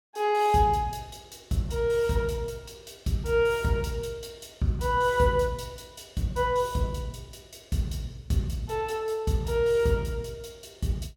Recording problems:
none

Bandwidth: 17.5 kHz